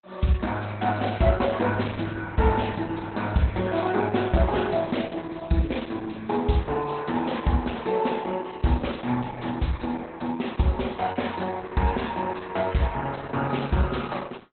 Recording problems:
codec artefacts; Opus, log-spectral distance 7 dB, nothing above 4 kHz

